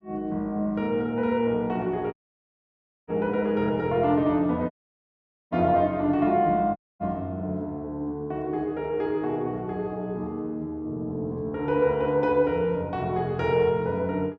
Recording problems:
audio cutting out; at 2 s for 1 s, at 4.5 s for 1 s and at 7 s

